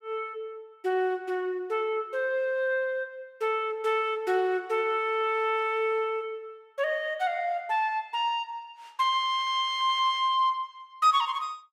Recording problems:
none

